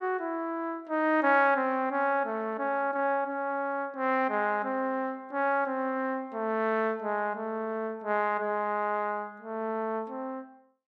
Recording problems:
none

